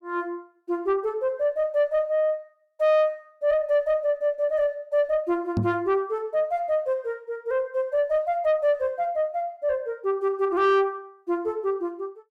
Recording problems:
distorted audio; soft clipping, signal-to-distortion ratio 12 dB
microphone bump; at 5.5 s; peak +3 dB vs average level

